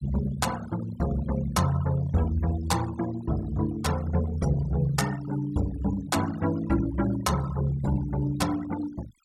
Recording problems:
noise reduction artefacts; signal-to-artefact ratio 17 dB

